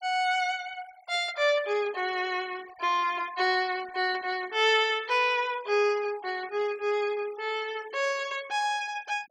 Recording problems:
denoising artefacts; signal-to-artefact ratio 22 dB

